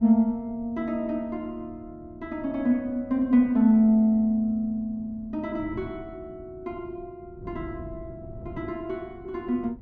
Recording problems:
wind on the microphone; below 190 Hz, SNR 20 dB

